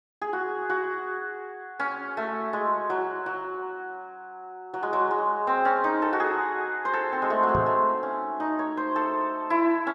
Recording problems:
microphone bump; at 7.5 s; peak -1 dB vs average level

